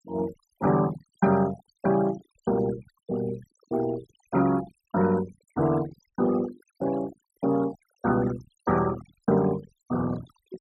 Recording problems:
noise reduction artefacts; signal-to-artefact ratio 15 dB

